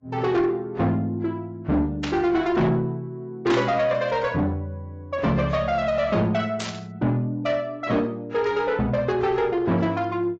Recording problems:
lossy compression; AAC, log-spectral distance 2 dB, nothing above 7.3 kHz
distorted audio; soft clipping, signal-to-distortion ratio 10 dB
burst of static; at 2 s, at 3.5 s and at 6.5 s; peak -2 dB vs average level

